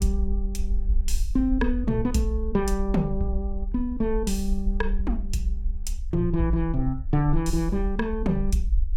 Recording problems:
low-frequency rumble; below 52 Hz, SNR 4 dB

